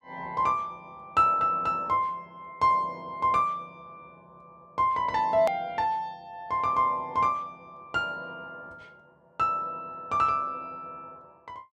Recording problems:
hard cut with a click; at 5.5 s

